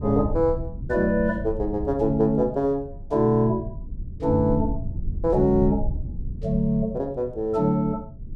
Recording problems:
rumble; below 100 Hz, SNR 11 dB

